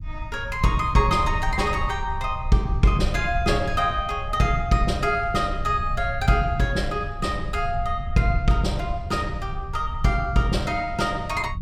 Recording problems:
low-frequency rumble; below 86 Hz, SNR 9 dB

